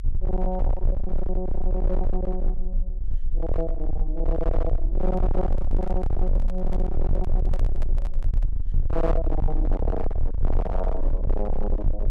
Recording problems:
distortion; hard clipping, signal-to-distortion ratio 7 dB
low-frequency rumble; below 38 Hz, strongest tone 18 Hz, SNR -3 dB
microphone handling noise; from 5 to 8.5 s; peak -5 dB vs average level

